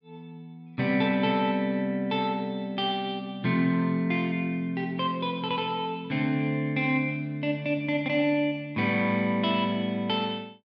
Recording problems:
none

